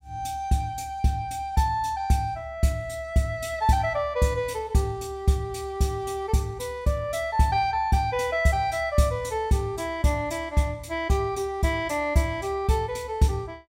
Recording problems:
none

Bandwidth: 16 kHz